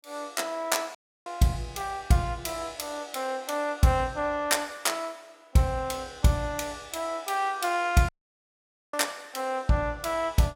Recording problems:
dropout; at 1 s and at 8 s for 1 s

